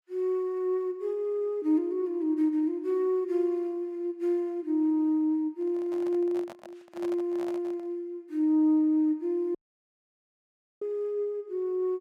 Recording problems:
handling noise; from 5.5 to 8 s; peak -10 dB vs average level
dropout; at 9.5 s for 1.5 s

